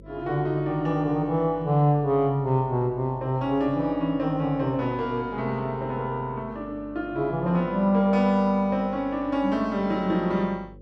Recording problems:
hum; 50 Hz, harmonics up to 550 Hz, SNR 22 dB

